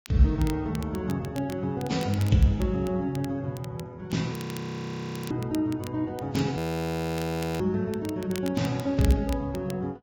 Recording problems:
lossy codec; Vorbis, log-spectral distance 2 dB, nothing above 17.7 kHz
crackling; vinyl, SNR 18 dB
audio freezing; at 4.5 s for 1 s and at 6.5 s for 1 s

